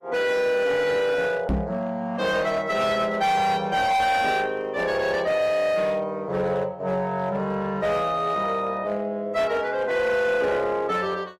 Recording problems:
lossy compression; AAC, log-spectral distance 2 dB, nothing above 14.3 kHz
distortion; hard clipping, signal-to-distortion ratio 11 dB
knock on the microphone; at 1.5 s; peak +2 dB vs average level

